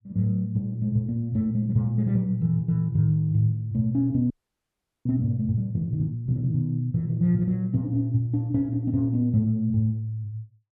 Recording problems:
frozen audio; at 4.5 s for 1 s

